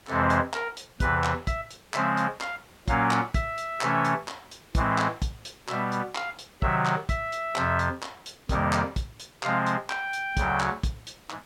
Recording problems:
background hiss; slope -3 dB per octave, SNR 27 dB

